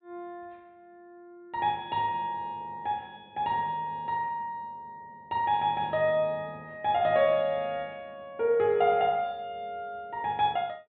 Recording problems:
low-pass filter; nothing above 4 kHz

